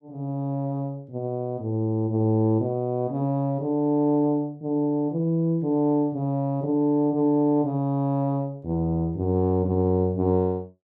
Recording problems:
none

